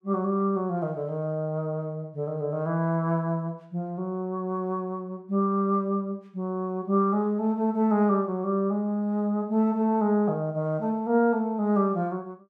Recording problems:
none

